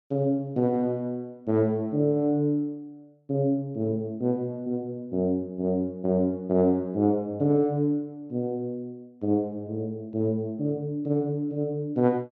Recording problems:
none

